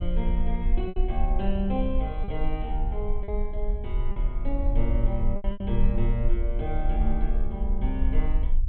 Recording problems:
treble missing; nothing above 4 kHz
rumble; below 44 Hz, strongest tone 22 Hz, SNR -3 dB
packet loss; 4% of the sound replaced, filled with repeated pitch periods

